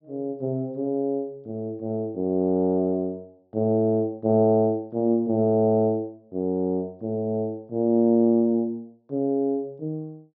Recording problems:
treble missing; nothing above 6 kHz

